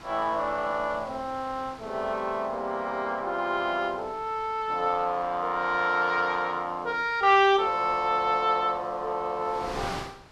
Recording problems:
wind noise; below 2.5 kHz, SNR 18 dB

